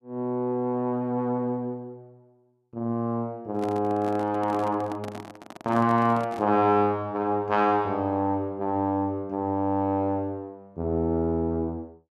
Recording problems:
microphone handling noise; from 3.5 to 6.5 s; peak -9 dB vs average level

